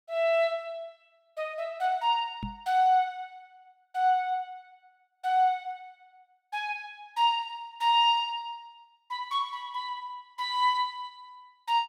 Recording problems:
microphone thump; at 2.5 s; peak -4 dB vs average level

